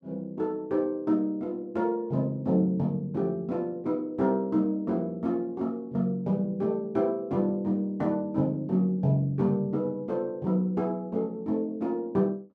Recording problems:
none

